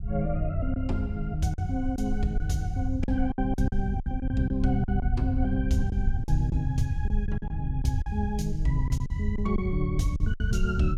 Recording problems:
rumble; below 86 Hz, SNR 1 dB
lost packets; 8% of the sound replaced, filled with silence

